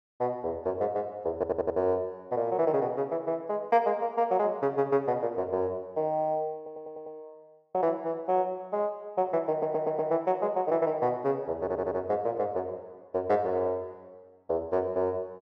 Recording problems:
stutter; 4 times, first at 1.5 s

